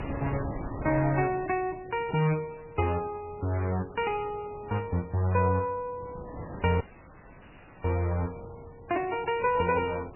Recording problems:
lossy compression; MP3, log-spectral distance 6 dB, nothing above 2.6 kHz
wind on the microphone; below 600 Hz, SNR 14 dB
audio cutting out; at 7 s for 1 s

